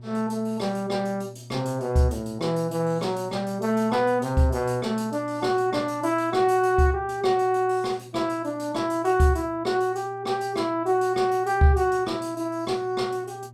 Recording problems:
electrical hum; 60 Hz, harmonics up to 600 Hz, SNR 20 dB

